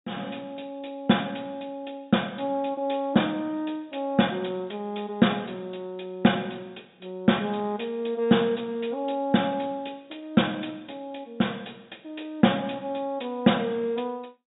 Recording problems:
treble missing; nothing above 4 kHz

